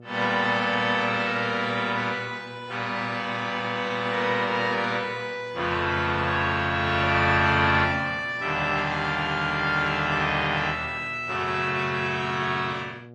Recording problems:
lossy codec; AAC, then MP3, log-spectral distance 3 dB, nothing above 8.5 kHz
electrical hum; 60 Hz, harmonics up to 840 Hz, SNR 22 dB

